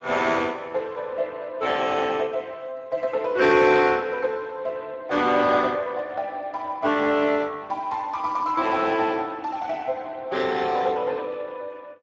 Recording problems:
lossy codec; Speex, log-spectral distance 4 dB, nothing above 7.3 kHz

